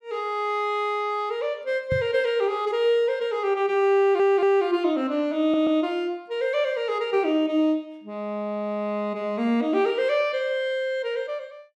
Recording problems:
microphone thump; at 2 s; peak -2 dB vs average level
audio stuttering; at 4 s and at 5.5 s

